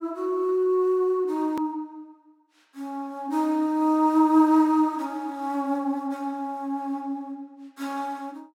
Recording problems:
click at an edit; at 1.5 s

